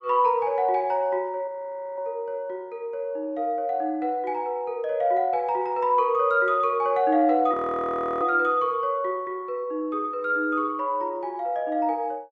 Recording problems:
frozen audio; at 1.5 s for 0.5 s and at 7.5 s for 0.5 s

